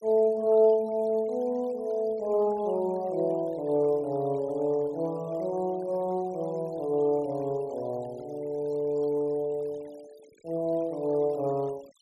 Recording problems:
noise reduction artefacts; signal-to-artefact ratio 28 dB

